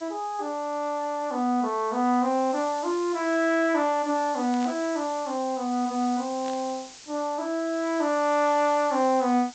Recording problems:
low-pass filter; nothing above 8 kHz
hiss; slope +1 dB per octave, SNR 18 dB
burst of static; at 4.5 s and at 6.5 s; peak -13 dB vs average level

